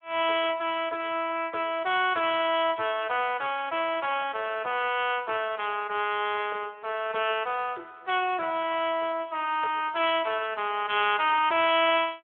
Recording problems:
phone line; 300 Hz to 3.4 kHz, Speex

